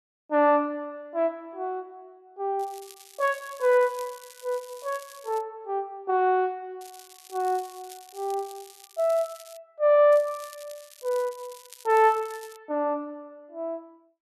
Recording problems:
crackling; from 2.5 to 5.5 s, from 7 to 9.5 s and from 10 to 13 s; loose cable, SNR 21 dB

